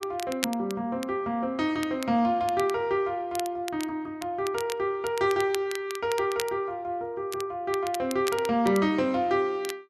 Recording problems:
crackle; vinyl, SNR 13 dB

